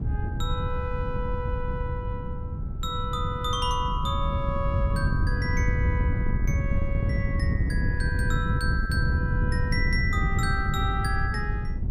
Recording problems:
wind on the microphone; below 130 Hz, SNR -3 dB

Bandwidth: 16 kHz